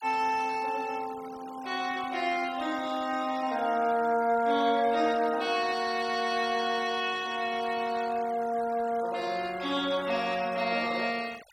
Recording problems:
noise reduction artefacts; signal-to-artefact ratio 18 dB

